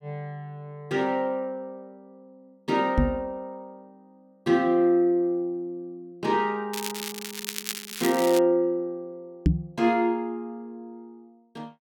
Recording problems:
microphone thump; at 3 s and at 9.5 s; peak +8 dB vs average level
crackling; from 6.5 to 8.5 s; loose cable, SNR 7 dB

